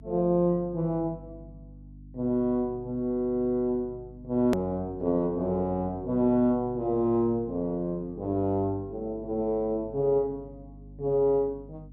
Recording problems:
hum; 50 Hz, harmonics up to 300 Hz, SNR 20 dB
hard cut with a click; at 4.5 s

